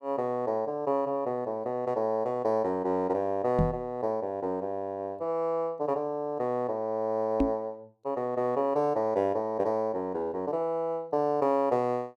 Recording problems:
knock on the microphone; at 3.5 s and at 7.5 s; peak +7 dB vs average level

